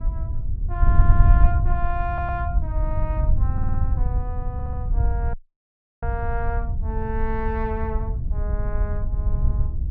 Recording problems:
low-frequency rumble; below 94 Hz, SNR 9 dB
wind on the microphone; below 76 Hz, SNR -7 dB
audio stuttering; 4 times, first at 1 s
audio cutting out; at 5.5 s for 0.5 s

